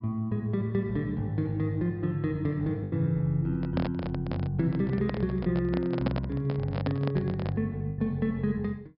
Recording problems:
treble missing; nothing above 5.5 kHz
packet loss; 2% of the sound replaced, filled with the last packet
handling noise; from 3.5 to 7.5 s; peak +2 dB vs average level

